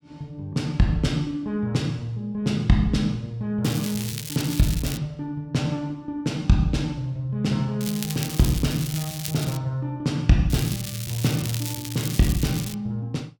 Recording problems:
crackle; from 3.5 to 5 s, from 8 to 9.5 s and from 11 to 13 s; loose cable, SNR 8 dB

